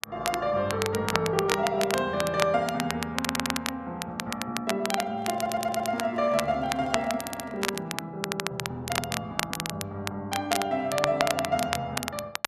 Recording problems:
crackle; vinyl, SNR 4 dB
audio stuttering; 4 times, first at 3 s
handling noise; from 5 to 8 s; peak -9 dB vs average level

